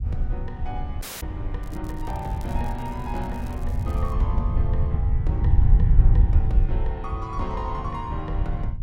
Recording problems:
rumble; below 82 Hz, SNR -8 dB
wind on the microphone; below 150 Hz, SNR 14 dB
dropout; at 1 s
crackling; from 1.5 to 4 s; loose cable, SNR 19 dB

